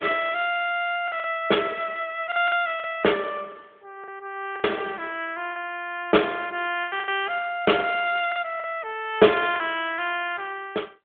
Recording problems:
phone line; 260 Hz to 3.5 kHz, AMR-NB
packet loss; 7% of the sound replaced, filled with the last packet

